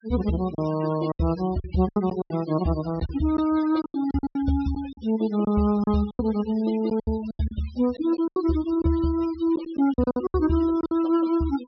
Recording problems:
treble cut off; nothing above 5.5 kHz
denoising artefacts; signal-to-artefact ratio 19 dB
lost packets; 12% of the sound replaced, filled with silence

